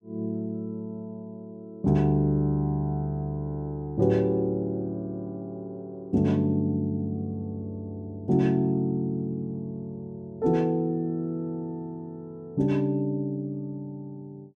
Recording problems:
none

